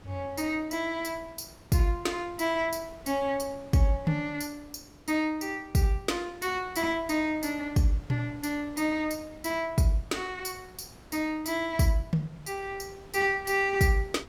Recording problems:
wind on the microphone; below 820 Hz, SNR 22 dB

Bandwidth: 17.5 kHz